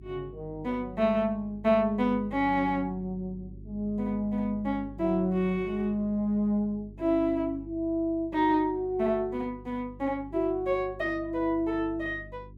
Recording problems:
mains hum; 50 Hz, harmonics up to 400 Hz, SNR 18 dB

